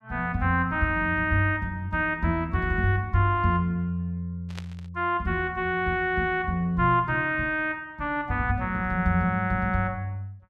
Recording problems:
burst of static; at 4.5 s; peak -10 dB vs average level

